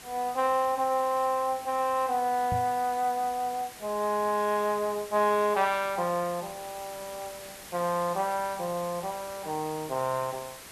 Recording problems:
background hiss; slope -1 dB per octave, SNR 15 dB
microphone bump; at 2.5 s; peak -2 dB vs average level

